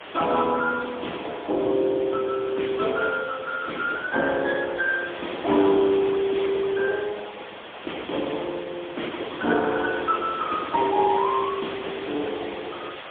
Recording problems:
telephone audio; 260 Hz to 3.4 kHz, AMR-NB, then MP3
hiss; SNR 13 dB

